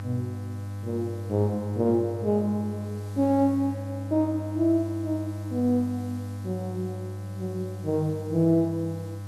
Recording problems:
hum; 50 Hz, harmonics up to 1.3 kHz, SNR 8 dB
background hiss; slope +3 dB per octave, SNR 27 dB

